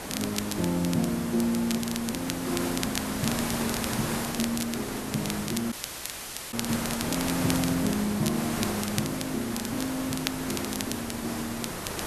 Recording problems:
hiss; slope -4 dB per octave, SNR 3 dB
crackling; vinyl, SNR 7 dB
audio cutting out; at 5.5 s for 1 s

